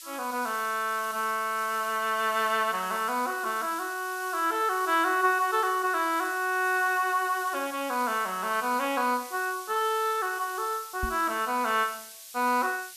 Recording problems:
hiss; SNR 14 dB
microphone bump; at 11 s; peak -2 dB vs average level

